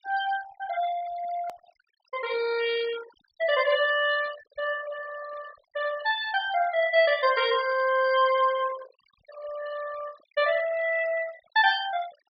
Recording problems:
treble missing; nothing above 5.5 kHz
noise reduction artefacts; signal-to-artefact ratio 15 dB
hard cut with a click; at 1.5 s

